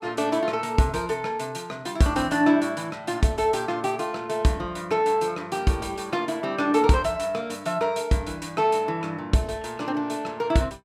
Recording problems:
none

